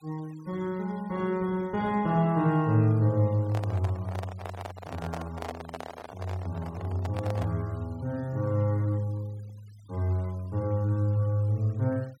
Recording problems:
noise reduction artefacts; signal-to-artefact ratio 26 dB
handling noise; from 3.5 to 7.5 s; peak -4 dB vs average level

